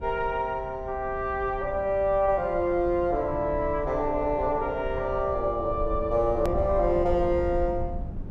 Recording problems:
rumble; below 92 Hz, SNR 11 dB
edit click; at 6.5 s

